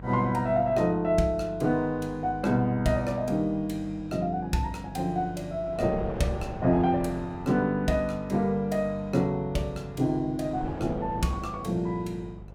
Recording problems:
electrical hum; 50 Hz, harmonics up to 600 Hz, SNR 18 dB
wind noise; below 540 Hz, SNR 14 dB

